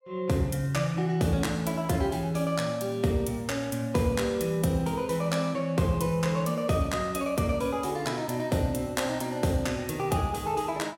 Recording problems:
none

